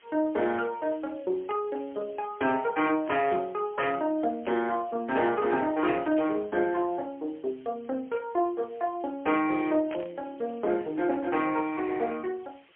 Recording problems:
telephone audio; 280 Hz to 3.2 kHz, AMR-NB, then MP3
hiss; SNR 29 dB
static burst; 5 times, first at 1.5 s; peak -8 dB vs average level

